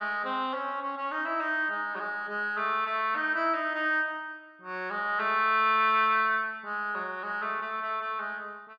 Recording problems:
none

